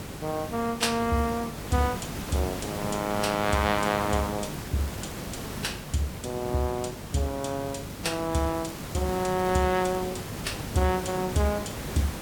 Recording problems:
hum; 50 Hz, harmonics up to 450 Hz, SNR 17 dB
hiss; slope -5 dB per octave, SNR 8 dB
crackling; from 4 to 6 s and from 7.5 to 11 s; loose cable, SNR 23 dB

